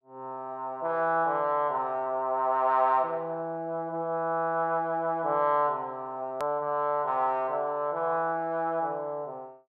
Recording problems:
hard cut with a click; at 6.5 s

